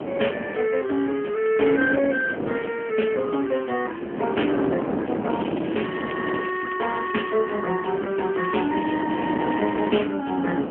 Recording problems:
telephone audio; 240 Hz to 3.1 kHz, AMR-NB
distortion; hard clipping, uneven, signal-to-distortion ratio 14 dB
hiss; SNR 23 dB
wind on the microphone; below 610 Hz, SNR 6 dB
crackle; from 5.5 to 7.5 s and from 8.5 to 10 s; loose cable, SNR 17 dB

